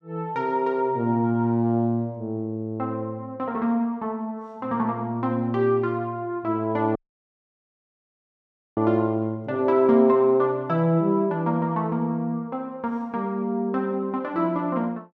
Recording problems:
dropout; at 7 s for 2 s

